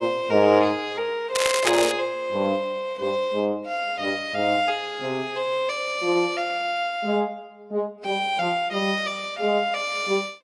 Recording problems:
codec artefacts; AAC, log-spectral distance 2 dB
crackling; at 1.5 s; loose cable, SNR 3 dB

